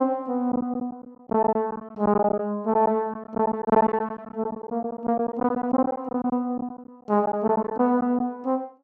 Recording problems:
lost packets; 12% of the sound replaced, filled with silence

